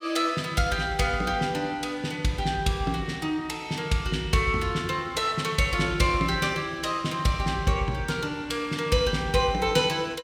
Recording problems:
none

